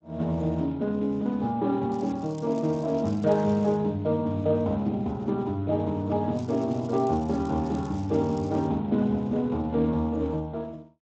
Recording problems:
codec artefacts; Speex, log-spectral distance 2 dB
crackling; from 2 to 4 s and from 6.5 to 8.5 s; loose cable, SNR 27 dB

